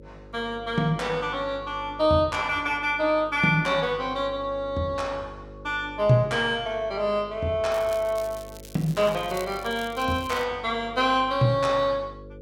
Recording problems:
electrical hum; 50 Hz, harmonics up to 550 Hz, SNR 19 dB
crackling; from 7.5 to 10 s; loose cable, SNR 20 dB

